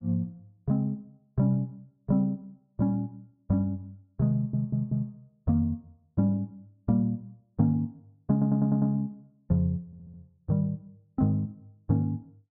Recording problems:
stutter; at 4.5 s, at 8.5 s and at 10 s

